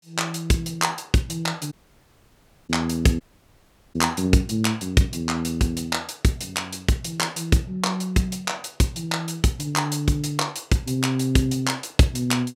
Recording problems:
dropout; at 1.5 s for 1 s and at 3 s for 0.5 s

